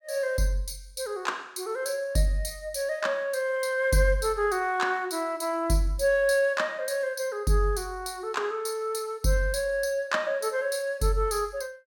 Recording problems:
none

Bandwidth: 17 kHz